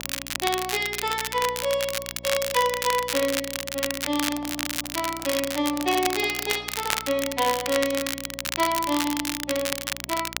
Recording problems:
hum; 60 Hz, harmonics up to 1 kHz, SNR 19 dB
crackle; vinyl, SNR 3 dB
microphone handling noise; from 4 to 7 s; peak -12 dB vs average level

